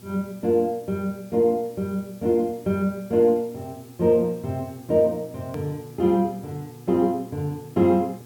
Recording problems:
electrical hum; 60 Hz, harmonics up to 1.2 kHz, SNR 23 dB
background hiss; slope +1 dB per octave, SNR 27 dB
hard cut with a click; at 5.5 s

